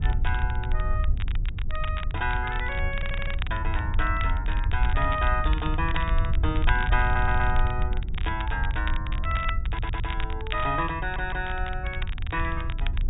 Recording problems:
low-pass filter; nothing above 4 kHz
wind noise; below 72 Hz, SNR -1 dB
crackle; vinyl, SNR 10 dB
stutter; 4 times, first at 3 s

